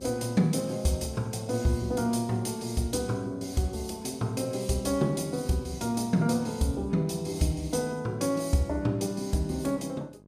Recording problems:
hum; 50 Hz, harmonics up to 1.1 kHz, SNR 26 dB

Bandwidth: 15 kHz